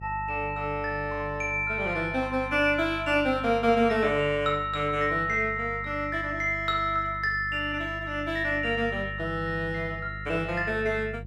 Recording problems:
hum; 50 Hz, harmonics up to 400 Hz, SNR 14 dB

